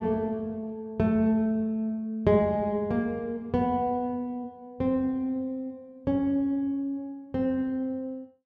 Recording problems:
none

